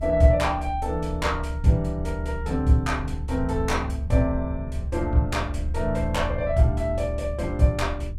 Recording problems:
low-frequency rumble; below 72 Hz, strongest tone 70 Hz, SNR 6 dB

